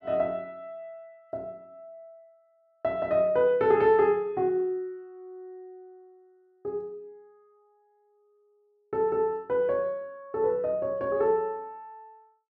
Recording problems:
none

